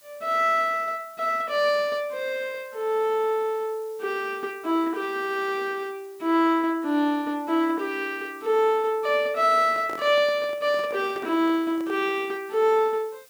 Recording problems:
hiss; slope +1 dB per octave, SNR 27 dB
microphone handling noise; from 9.5 to 12 s; peak -10 dB vs average level

